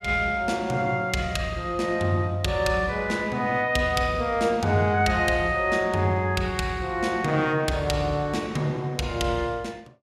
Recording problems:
none

